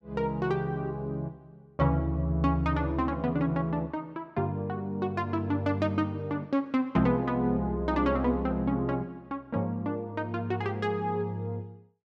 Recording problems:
none

